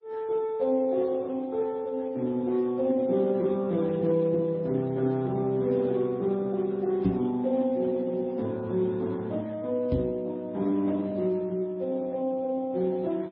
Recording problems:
lossy codec; Speex, then MP3, log-spectral distance 2 dB
microphone bump; at 7 s and at 10 s; peak +6 dB vs average level

